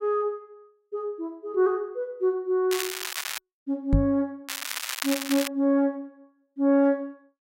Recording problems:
crackle; at 2.5 s and at 4.5 s; loose cable, SNR 5 dB
microphone bump; at 4 s; peak +7 dB vs average level

